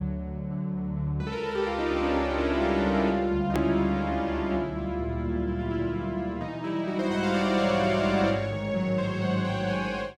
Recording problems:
click at an edit; at 3.5 s

